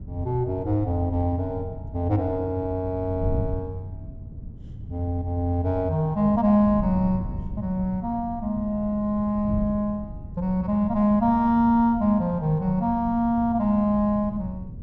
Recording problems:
wind noise; below 150 Hz, SNR 12 dB

